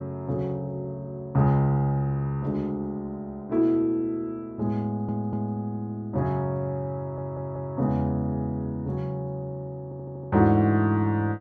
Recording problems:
audio stuttering; at 5 s, at 7 s and at 10 s

